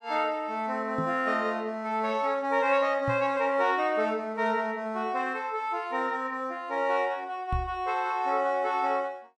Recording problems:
microphone thump; at 1 s, at 3 s and at 7.5 s; peak 0 dB vs average level

